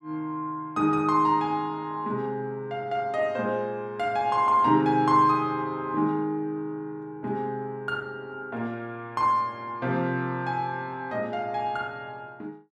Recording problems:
none

